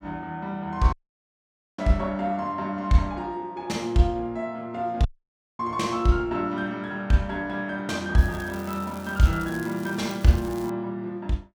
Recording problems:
audio cutting out; at 1 s for 1 s and at 5 s for 0.5 s
crackle; from 8 to 11 s; loose cable, SNR 20 dB

